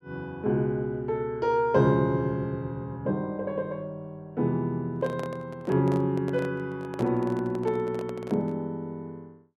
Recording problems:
handling noise; from 5 to 8.5 s; peak -3 dB vs average level

